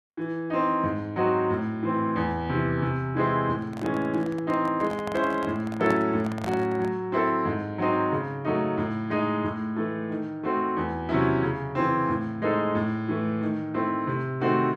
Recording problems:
handling noise; from 3.5 to 7 s; peak -3 dB vs average level

